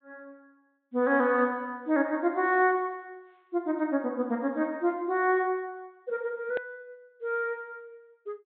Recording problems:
treble missing; nothing above 4 kHz
click at an edit; at 6.5 s

